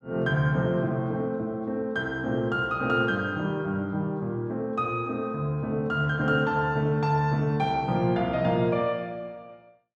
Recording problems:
none

